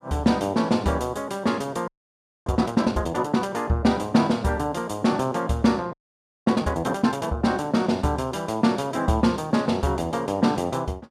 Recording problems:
frozen audio; at 2 s for 0.5 s and at 6 s for 0.5 s

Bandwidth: 14.5 kHz